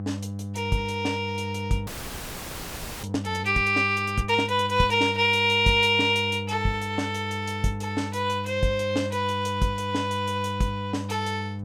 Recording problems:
hum; 50 Hz, harmonics up to 700 Hz, SNR 10 dB
audio freezing; at 2 s for 1 s

